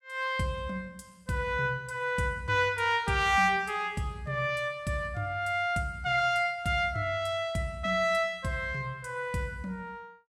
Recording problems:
none

